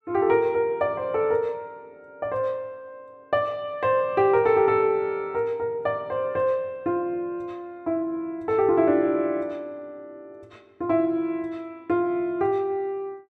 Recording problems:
none

